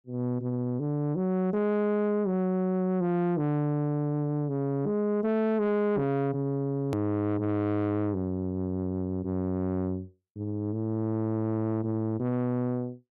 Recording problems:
distortion; soft clipping, signal-to-distortion ratio 10 dB
hard cut with a click; at 7 s

